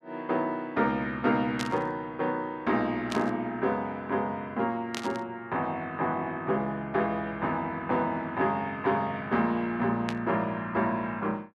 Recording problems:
burst of static; 4 times, first at 1.5 s; peak 0 dB vs average level

